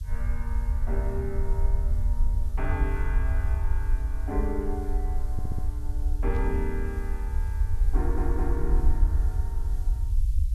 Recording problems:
hiss; slope +3 dB per octave, SNR 21 dB
rumble; below 60 Hz, SNR -7 dB
audio stuttering; at 5.5 s and at 8 s
static burst; at 6.5 s; peak -13 dB vs average level

